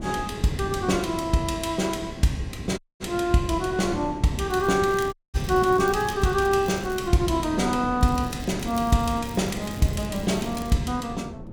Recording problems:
wind noise; below 300 Hz, SNR 11 dB
audio cutting out; at 3 s and at 5 s
crackle; from 4.5 to 7 s and from 8 to 11 s; loose cable, SNR 21 dB

